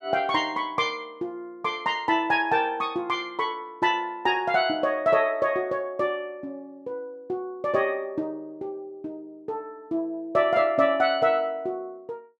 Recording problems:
none

